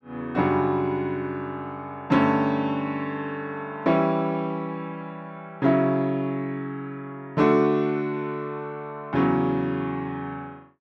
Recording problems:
none

